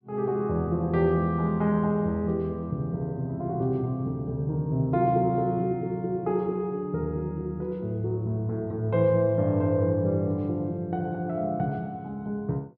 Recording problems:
treble missing; nothing above 5.5 kHz

